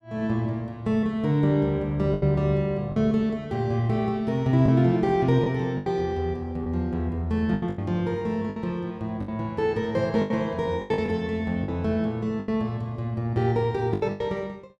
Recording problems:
lost packets; 7% of the sound replaced, filled with the last packet

